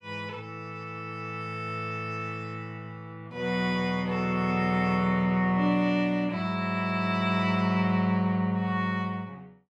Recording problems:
none

